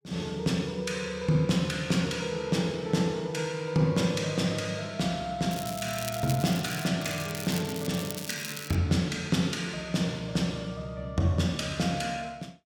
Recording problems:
crackle; from 5.5 to 7 s and from 7 to 9 s; loose cable, SNR 10 dB

